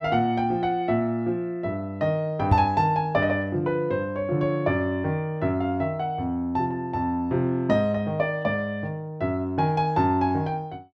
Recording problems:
microphone thump; at 2.5 s; peak +7 dB vs average level

